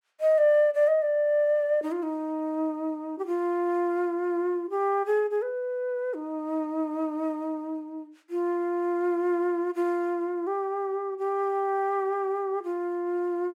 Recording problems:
none

